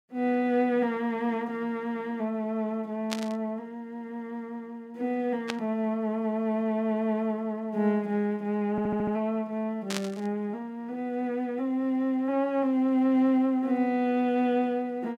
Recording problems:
static burst; at 3 s, at 5.5 s and at 10 s; peak 0 dB vs average level
audio stuttering; at 8.5 s

